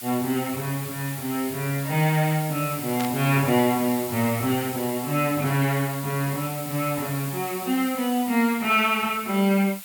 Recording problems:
background hiss; SNR 10 dB
static burst; at 3 s; peak -5 dB vs average level

